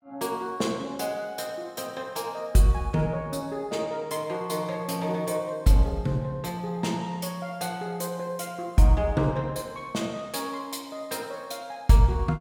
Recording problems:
none

